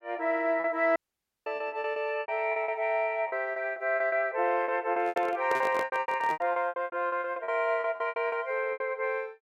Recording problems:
lost packets; 19% of the sound replaced, filled with repeated pitch periods
audio cutting out; at 1 s for 0.5 s
microphone handling noise; from 5 to 6.5 s; peak -1 dB vs average level

